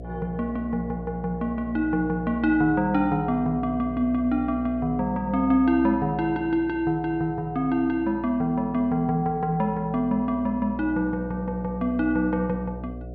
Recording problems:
hum; 60 Hz, harmonics up to 720 Hz, SNR 14 dB

